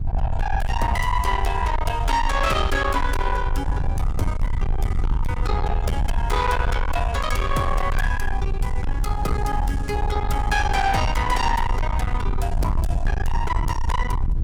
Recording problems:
distortion; soft clipping, signal-to-distortion ratio 7 dB
rumble; below 78 Hz, SNR 1 dB
wind on the microphone; below 140 Hz, SNR 9 dB

